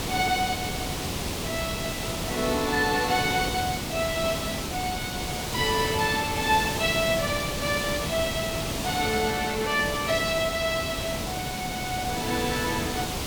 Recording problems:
hiss; SNR 3 dB

